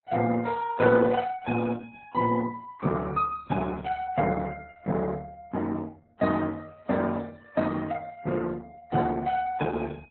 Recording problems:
lossy codec; Vorbis, then Opus, log-spectral distance 3 dB, nothing above 4 kHz

